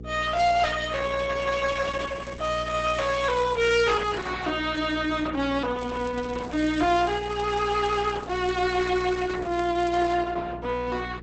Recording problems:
lossy compression; Opus, log-spectral distance 5 dB, nothing above 8 kHz
distortion; hard clipping, uneven, signal-to-distortion ratio 10 dB
hum; 60 Hz, harmonics up to 480 Hz, SNR 15 dB
crackling; from 1.5 to 4.5 s and from 6 to 10 s; loose cable, SNR 23 dB

